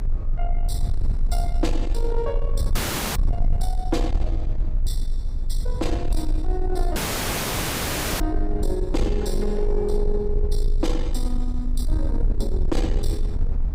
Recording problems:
distorted audio; soft clipping, signal-to-distortion ratio 12 dB
low-frequency rumble; below 44 Hz, strongest tone 26 Hz, SNR -2 dB
dropout; at 3 s and at 7 s for 1 s

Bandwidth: 15.5 kHz